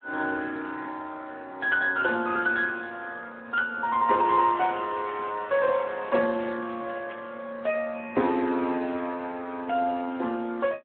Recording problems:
telephone audio; 240 Hz to 2.8 kHz, Speex
burst of static; at 2 s and at 7 s; peak -14 dB vs average level

